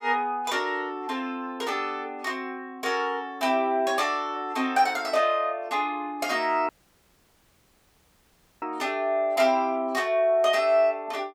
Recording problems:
audio cutting out; at 6.5 s for 2 s

